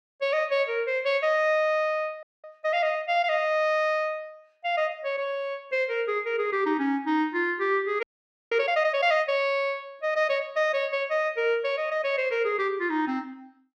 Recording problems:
frozen audio; at 2 s and at 8 s

